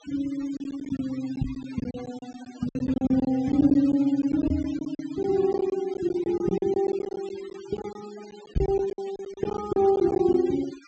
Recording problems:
treble missing; nothing above 8 kHz
denoising artefacts; signal-to-artefact ratio 21 dB
lost packets; 13% of the sound replaced, filled with silence
microphone thump; 4 times, first at 1.5 s; peak +4 dB vs average level

